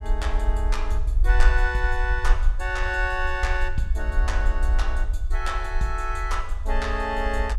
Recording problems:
low-frequency rumble; below 52 Hz, SNR -2 dB

